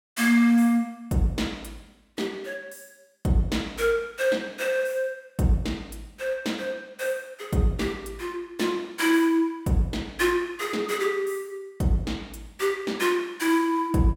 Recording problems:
none

